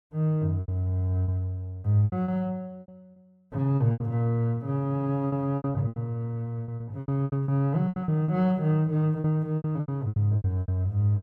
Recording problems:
packet loss; 15% of the sound replaced, filled with repeated pitch periods

